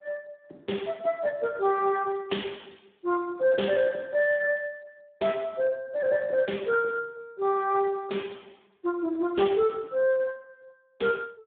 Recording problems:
phone line; 240 Hz to 3.5 kHz, Speex

